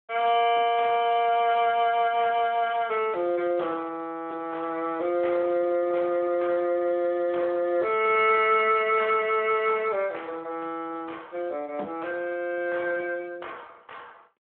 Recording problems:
telephone audio; 280 Hz to 3.4 kHz, Speex

